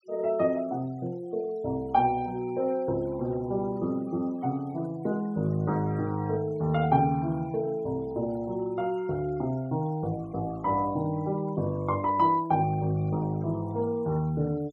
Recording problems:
noise reduction artefacts; signal-to-artefact ratio 27 dB

